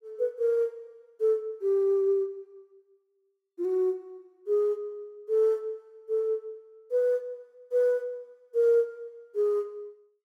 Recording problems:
none

